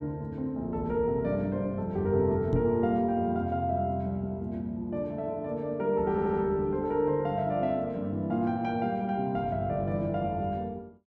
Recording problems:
knock on the microphone; at 2.5 s; peak +4 dB vs average level
audio stuttering; at 6 s

